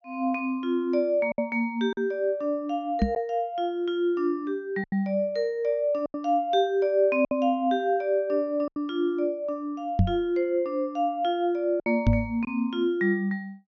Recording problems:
low-pass filter; nothing above 6.7 kHz
lost packets; 4% of the sound replaced, filled with silence
microphone thump; at 3 s, at 10 s and at 12 s; peak +8 dB vs average level

